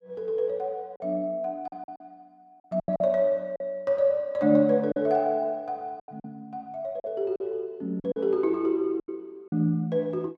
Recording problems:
packet loss; 8% of the sound replaced, filled with silence

